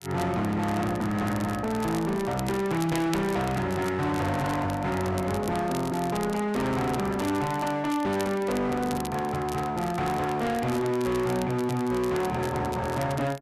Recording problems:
distortion; hard clipping, uneven, signal-to-distortion ratio 6 dB
crackling; vinyl, SNR 16 dB

